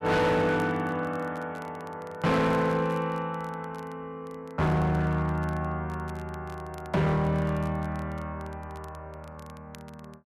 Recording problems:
distortion; hard clipping, signal-to-distortion ratio 7 dB
crackle; vinyl, SNR 27 dB

